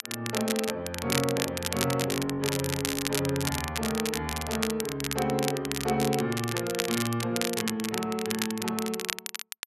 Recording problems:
crackle; vinyl, SNR 2 dB

